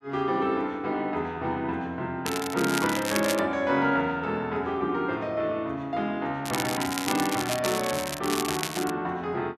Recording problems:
crackle; from 2.5 to 3.5 s and from 6.5 to 9 s; loose cable, SNR 5 dB

